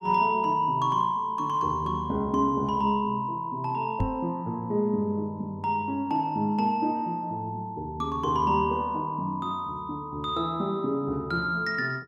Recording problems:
microphone bump; at 4 s; peak +3 dB vs average level

